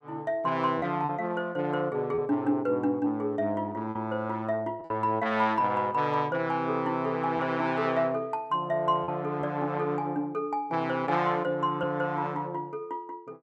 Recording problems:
lost packets; 2% of the sound replaced, filled with repeated pitch periods

